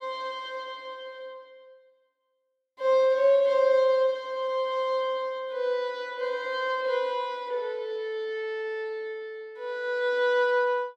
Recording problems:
none

